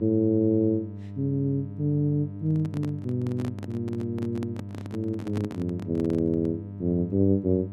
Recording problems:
hum; 50 Hz, harmonics up to 700 Hz, SNR 11 dB
handling noise; from 2.5 to 6.5 s; peak -3 dB vs average level

